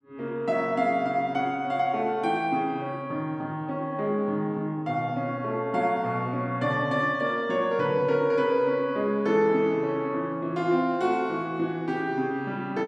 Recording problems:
none

